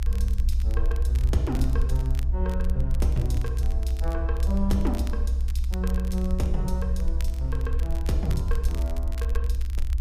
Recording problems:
hum; 60 Hz, harmonics up to 300 Hz, SNR 20 dB
low-frequency rumble; below 64 Hz, SNR -5 dB
wind noise; below 88 Hz, SNR 19 dB
crackling; vinyl, SNR 16 dB

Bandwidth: 15 kHz